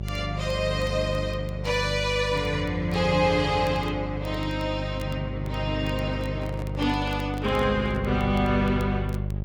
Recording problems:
hum; 50 Hz, harmonics up to 600 Hz, SNR 6 dB
crackle; vinyl, SNR 27 dB
microphone handling noise; from 6 to 8 s; peak -10 dB vs average level

